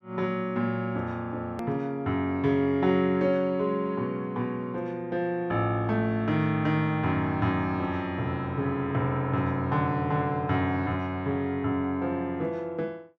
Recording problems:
edit click; at 1.5 s

